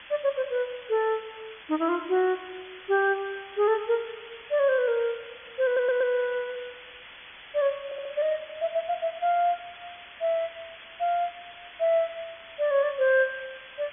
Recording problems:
low-pass filter; nothing above 3.5 kHz
background hiss; SNR 17 dB
audio stuttering; at 5.5 s and at 8 s

